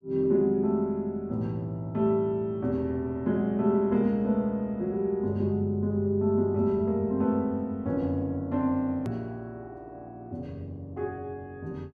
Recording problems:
click at an edit; at 9 s

